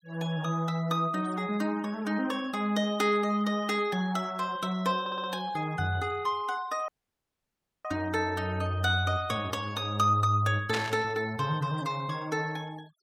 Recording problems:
noise reduction artefacts; signal-to-artefact ratio 24 dB
stutter; at 5 s
audio cutting out; at 7 s for 1 s
static burst; at 11 s; peak +1 dB vs average level

